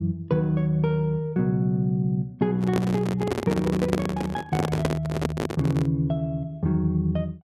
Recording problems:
handling noise; from 2.5 to 6 s; peak +4 dB vs average level

